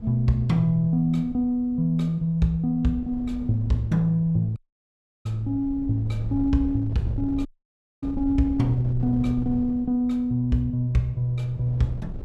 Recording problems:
wind on the microphone; below 110 Hz, SNR 14 dB
audio cutting out; at 4.5 s for 0.5 s and at 7.5 s for 0.5 s

